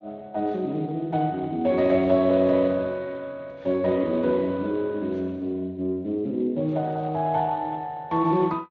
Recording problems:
codec artefacts; Speex, log-spectral distance 2 dB

